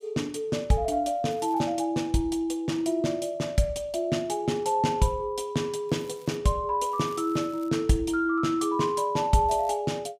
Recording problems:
crackling; 4 times, first at 1.5 s; loose cable, SNR 28 dB

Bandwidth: 15.5 kHz